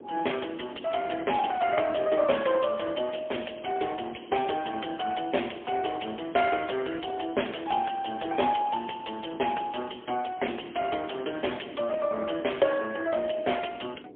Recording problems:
phone line; 280 Hz to 3.4 kHz, AMR-NB, then MP3
wind noise; below 420 Hz, SNR 18 dB

